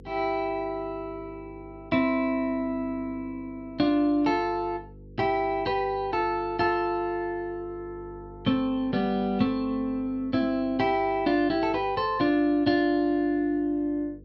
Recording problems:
electrical hum; 50 Hz, harmonics up to 500 Hz, SNR 21 dB

